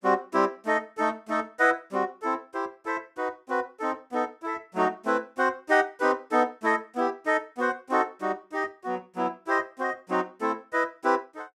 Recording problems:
none

